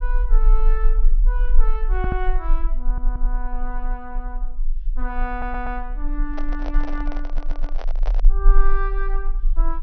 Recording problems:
treble missing; nothing above 6 kHz
rumble; below 34 Hz, strongest tone 22 Hz, SNR -8 dB
stutter; 4 times, first at 2 s
handling noise; from 6.5 to 8.5 s; peak +1 dB vs average level

